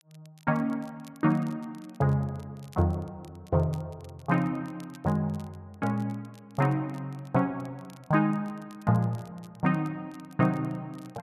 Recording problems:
crackle; vinyl, SNR 29 dB

